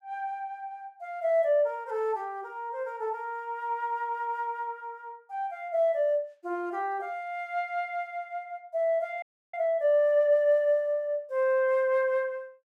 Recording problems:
audio freezing; at 9 s

